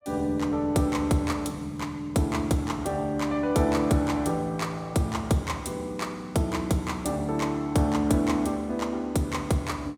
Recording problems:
none

